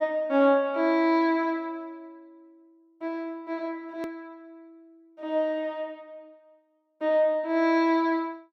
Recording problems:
hard cut with a click; at 4 s

